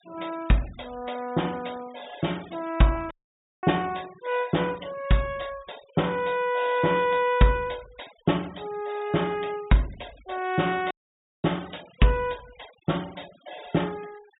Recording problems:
treble missing; nothing above 4 kHz
denoising artefacts; signal-to-artefact ratio 21 dB
audio cutting out; at 3 s for 0.5 s and at 11 s for 0.5 s

